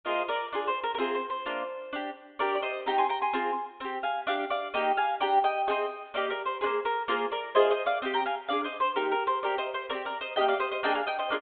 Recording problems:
low-pass filter; nothing above 4 kHz

